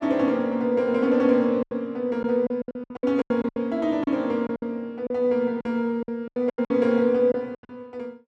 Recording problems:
packet loss; 13% of the sound replaced, filled with silence

